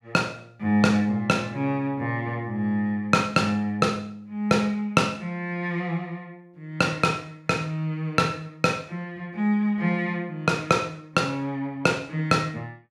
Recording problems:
none

